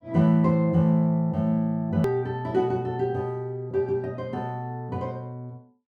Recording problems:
click at an edit; at 2 s

